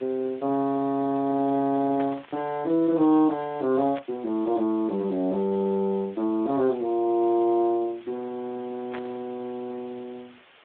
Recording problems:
telephone audio; 190 Hz to 3.6 kHz, Speex
hiss; SNR 27 dB
static burst; at 2 s, at 4 s and at 9 s; peak -7 dB vs average level

